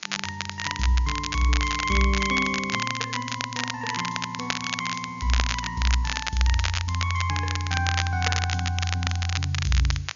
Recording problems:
treble missing; nothing above 6.9 kHz
background hiss; SNR 24 dB
crackling; vinyl, SNR 4 dB

